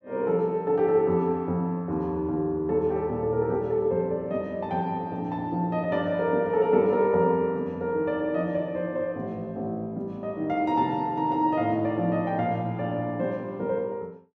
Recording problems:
none

